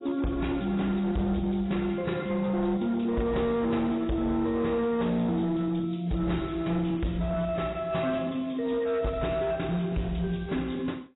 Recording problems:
codec artefacts; AAC, log-spectral distance 4 dB, nothing above 3.8 kHz
distorted audio; hard clipping, signal-to-distortion ratio 11 dB

